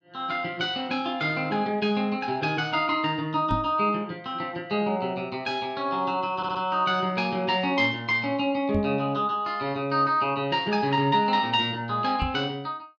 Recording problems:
knock on the microphone; at 3.5 s, at 9 s and at 12 s; peak 0 dB vs average level
audio stuttering; at 6.5 s

